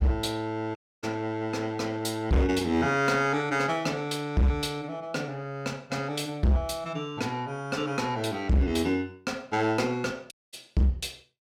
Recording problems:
distortion; hard clipping, signal-to-distortion ratio 6 dB
audio cutting out; at 1 s and at 10 s

